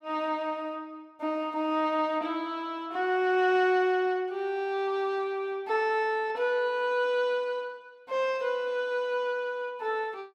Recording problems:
none

